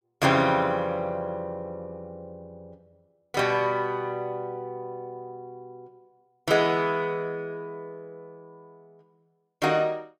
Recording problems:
none

